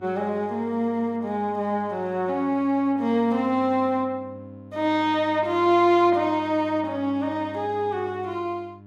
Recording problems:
hum; 50 Hz, harmonics up to 1 kHz, SNR 21 dB

